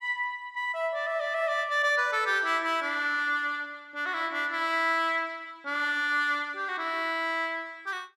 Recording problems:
none

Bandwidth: 14.5 kHz